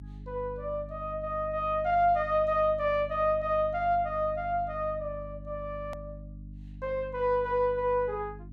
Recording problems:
hum; 50 Hz, harmonics up to 300 Hz, SNR 15 dB
click at an edit; at 6 s

